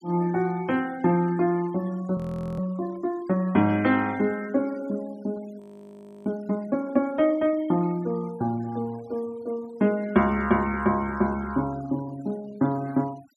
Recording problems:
denoising artefacts; signal-to-artefact ratio 24 dB
frozen audio; at 2 s and at 5.5 s for 0.5 s

